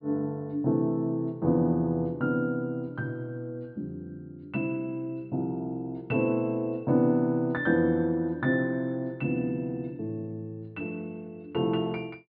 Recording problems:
low-pass filter; nothing above 4.9 kHz

